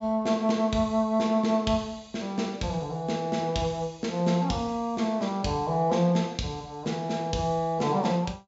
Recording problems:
treble cut off; nothing above 8 kHz

